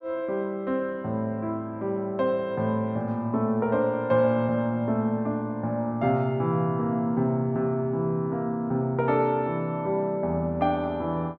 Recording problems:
none

